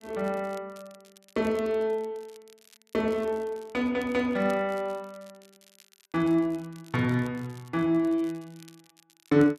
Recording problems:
crackle; vinyl, SNR 27 dB

